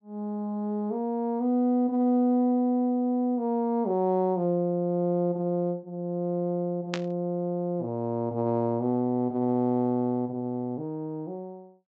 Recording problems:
treble cut off; nothing above 8 kHz
burst of static; at 7 s; peak -1 dB vs average level

